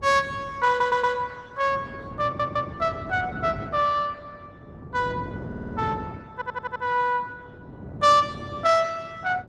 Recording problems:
codec artefacts; Opus, log-spectral distance 3 dB, nothing above 14.3 kHz
wind noise; below 370 Hz, SNR 14 dB
audio stuttering; 4 times, first at 0.5 s

